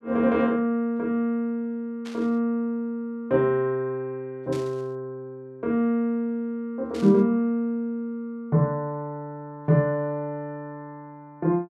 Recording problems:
burst of static; at 2 s, at 4.5 s and at 7 s; peak -13 dB vs average level

